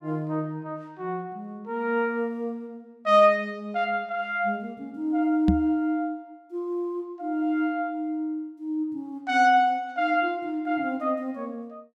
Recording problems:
knock on the microphone; at 5.5 s; peak +8 dB vs average level

